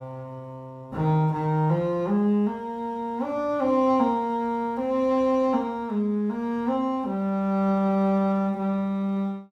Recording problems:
none

